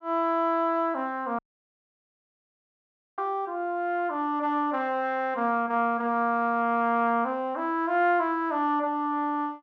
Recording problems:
audio cutting out; at 1.5 s for 2 s

